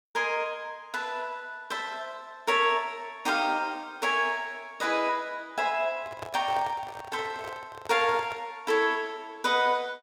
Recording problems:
microphone handling noise; from 6 to 8.5 s; peak -5 dB vs average level

